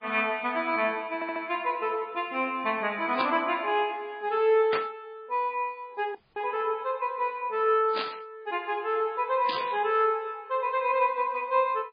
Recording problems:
codec artefacts; MP3, log-spectral distance 2 dB, nothing above 4.2 kHz
audio stuttering; at 1 s
burst of static; 4 times, first at 3 s; peak 0 dB vs average level
dropout; at 6 s

